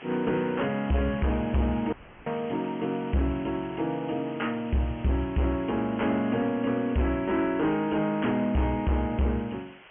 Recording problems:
treble cut off; nothing above 3.2 kHz
lossy compression; G.722, log-spectral distance 15 dB
distorted audio; hard clipping, signal-to-distortion ratio 10 dB
hiss; SNR 19 dB
dropout; at 2 s

